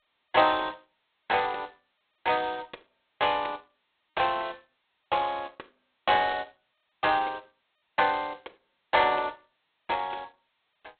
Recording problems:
telephone audio; 320 Hz to 3.7 kHz, G.726

